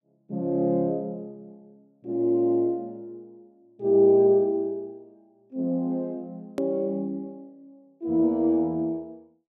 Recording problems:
click at an edit; at 6.5 s

